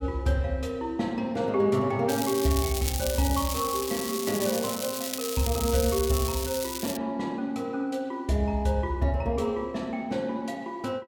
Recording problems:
crackle; from 2 to 7 s; loose cable, SNR 5 dB

